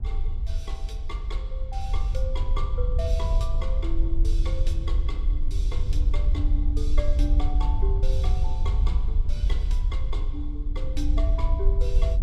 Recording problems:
wind on the microphone; below 58 Hz, SNR -11 dB

